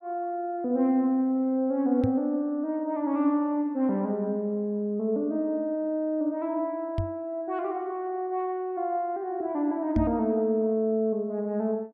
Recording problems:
knock on the microphone; at 2 s, at 7 s and at 10 s; peak +4 dB vs average level

